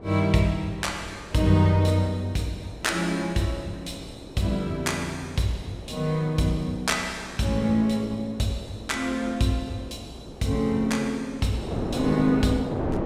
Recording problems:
wind on the microphone; below 550 Hz, SNR 13 dB

